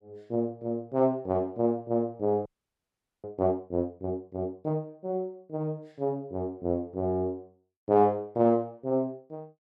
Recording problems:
audio freezing; at 2.5 s for 1 s

